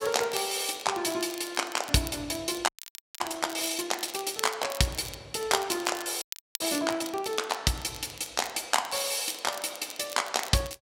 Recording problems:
crackling; vinyl, SNR 13 dB
frozen audio; at 2.5 s for 0.5 s and at 6 s

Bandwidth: 16 kHz